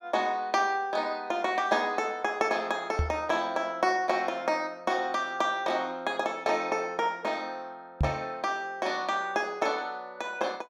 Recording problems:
microphone bump; at 3 s and at 8 s; peak +6 dB vs average level

